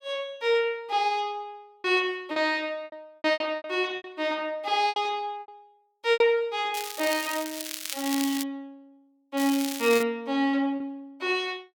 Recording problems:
lost packets; 7% of the sound replaced, filled with repeated pitch periods
crackle; from 6.5 to 8.5 s and at 9.5 s; loose cable, SNR 7 dB

